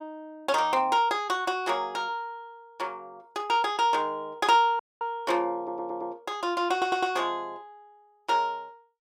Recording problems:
audio cutting out; at 5 s
audio stuttering; at 5.5 s and at 6.5 s

